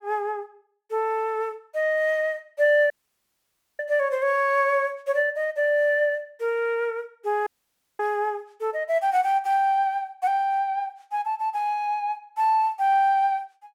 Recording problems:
dropout; at 3 s for 1 s and at 7.5 s for 0.5 s

